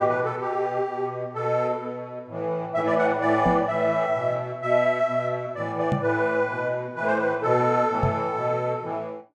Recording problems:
microphone thump; at 3.5 s, at 6 s and at 8 s; peak +3 dB vs average level

